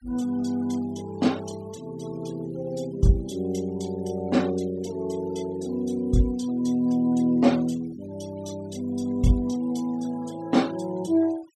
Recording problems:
denoising artefacts; signal-to-artefact ratio 21 dB

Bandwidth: 13.5 kHz